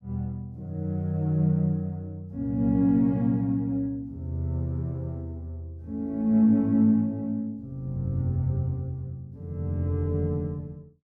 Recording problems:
none

